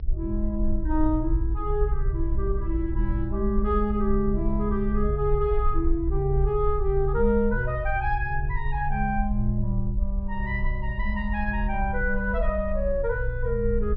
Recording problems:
treble missing; nothing above 5.4 kHz
rumble; below 56 Hz, SNR 3 dB

